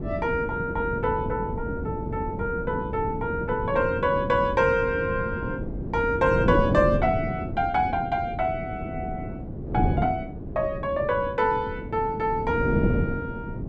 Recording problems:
wind noise; below 310 Hz, SNR 5 dB

